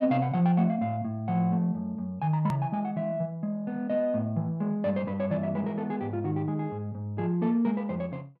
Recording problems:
hard cut with a click; at 2.5 s

